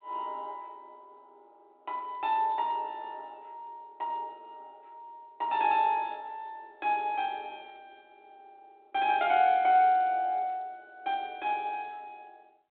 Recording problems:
telephone audio; 260 Hz to 3.8 kHz, G.726

